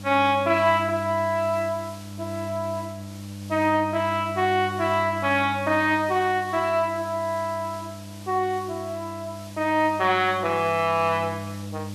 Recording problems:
electrical hum; 50 Hz, harmonics up to 600 Hz, SNR 14 dB
background hiss; slope 0 dB per octave, SNR 22 dB

